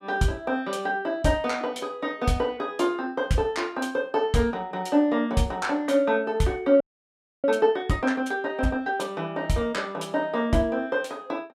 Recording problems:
audio freezing; at 7 s for 0.5 s

